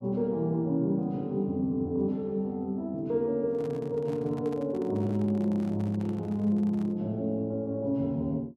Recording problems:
microphone handling noise; from 3.5 to 7 s; peak -13 dB vs average level

